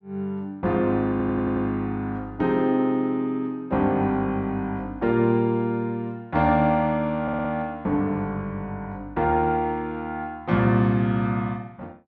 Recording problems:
stutter; at 1 s and at 7 s

